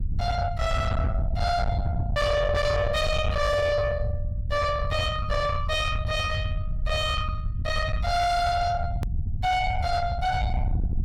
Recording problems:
distorted audio; soft clipping, signal-to-distortion ratio 8 dB
low-frequency rumble; below 120 Hz, SNR 3 dB
hard cut with a click; at 9 s

